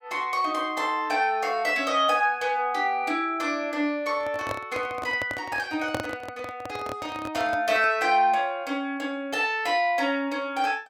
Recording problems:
microphone handling noise; from 4 to 8 s; peak 0 dB vs average level

